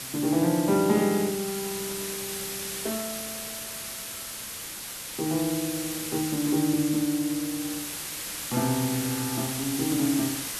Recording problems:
hiss; slope +1 dB per octave, SNR 5 dB

